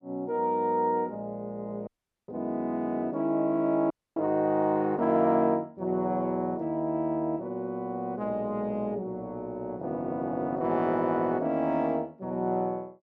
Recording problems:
dropout; at 2 s and at 4 s

